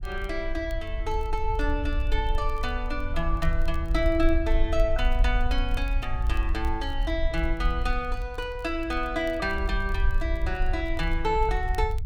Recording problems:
rumble; below 54 Hz, SNR 1 dB
crackling; vinyl, SNR 28 dB

